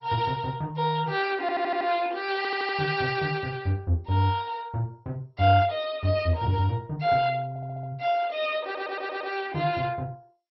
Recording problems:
lossy codec; MP2, log-spectral distance 3 dB, nothing above 4.8 kHz
stutter; 4 times, first at 1.5 s

